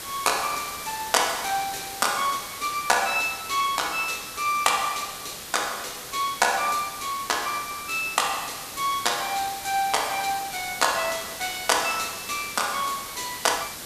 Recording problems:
background hiss; slope -1 dB per octave, SNR 9 dB

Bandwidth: 14.5 kHz